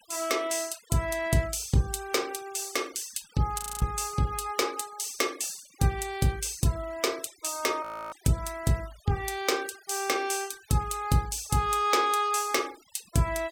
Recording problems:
denoising artefacts; signal-to-artefact ratio 20 dB
frozen audio; at 3.5 s and at 8 s

